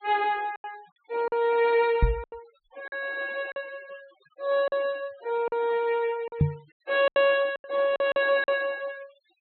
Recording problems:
treble missing; nothing above 4.1 kHz
noise reduction artefacts; signal-to-artefact ratio 23 dB
packet loss; 9% of the sound replaced, filled with silence
knock on the microphone; at 2 s and at 6.5 s; peak +8 dB vs average level

